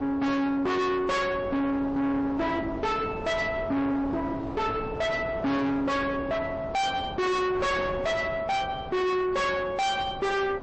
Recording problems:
codec artefacts; MP3, log-spectral distance 2 dB, nothing above 8 kHz
distortion; soft clipping, signal-to-distortion ratio 6 dB
wind noise; below 760 Hz, SNR 12 dB

